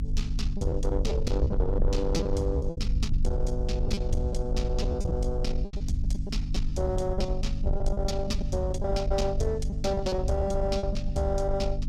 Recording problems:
distorted audio; soft clipping, signal-to-distortion ratio 11 dB
mains hum; 50 Hz, harmonics up to 400 Hz, SNR 4 dB
low-frequency rumble; below 60 Hz, strongest tone 26 Hz, SNR 2 dB
lost packets; 10% of the sound replaced, filled with repeated pitch periods

